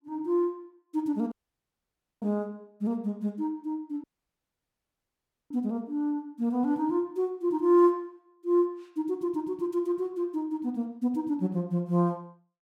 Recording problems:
audio cutting out; at 1.5 s for 1 s and at 4 s for 1.5 s

